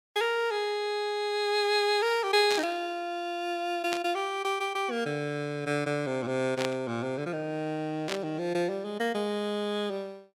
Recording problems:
static burst; 4 times, first at 2.5 s; peak 0 dB vs average level

